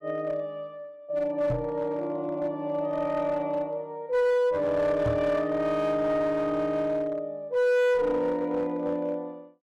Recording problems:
distorted audio; hard clipping, uneven, signal-to-distortion ratio 10 dB
microphone thump; at 1.5 s and at 5 s; peak 0 dB vs average level

